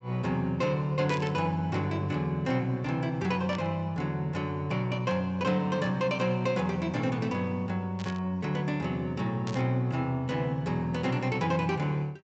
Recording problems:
treble missing; nothing above 8 kHz
burst of static; 4 times, first at 1 s; peak -8 dB vs average level

